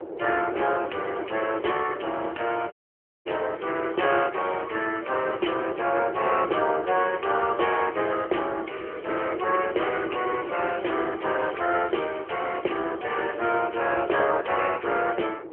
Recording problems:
phone line; 300 Hz to 3.2 kHz, AMR-NB
wind noise; below 530 Hz, SNR 10 dB
audio cutting out; at 2.5 s for 0.5 s
crackling; from 10 to 13 s and from 13 to 14 s; loose cable, SNR 27 dB

